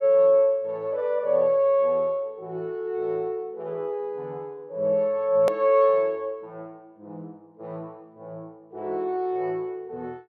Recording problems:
click at an edit; at 5.5 s

